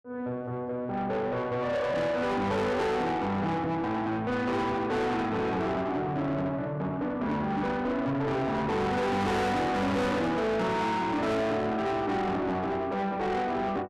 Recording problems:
distorted audio; soft clipping, signal-to-distortion ratio 6 dB

